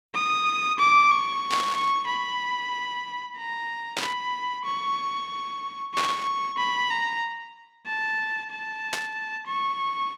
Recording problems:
burst of static; 4 times, first at 1.5 s; peak +2 dB vs average level

